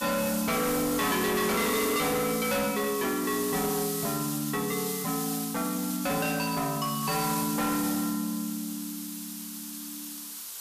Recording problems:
distortion; hard clipping, signal-to-distortion ratio 8 dB
hiss; SNR 5 dB

